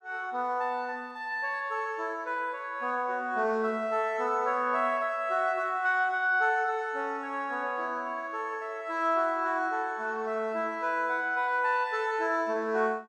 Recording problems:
none

